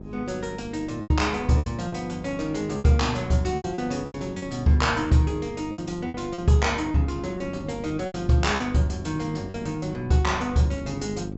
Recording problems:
treble cut off; nothing above 7.7 kHz
hum; 50 Hz, harmonics up to 850 Hz, SNR 13 dB
wind on the microphone; below 310 Hz, SNR 21 dB
packet loss; 8% of the sound replaced, filled with repeated pitch periods

